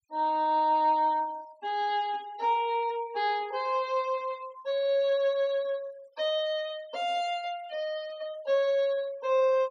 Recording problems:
noise reduction artefacts; signal-to-artefact ratio 25 dB

